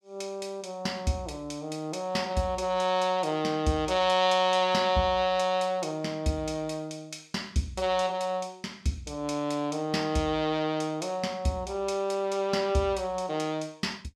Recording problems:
none

